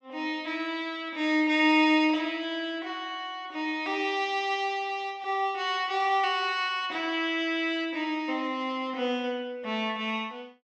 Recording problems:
treble missing; nothing above 8 kHz

